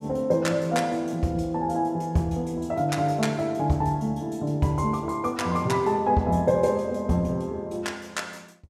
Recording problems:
none

